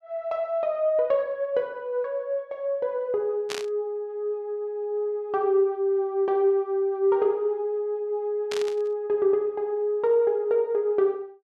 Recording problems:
burst of static; at 3.5 s and at 8.5 s; peak -3 dB vs average level

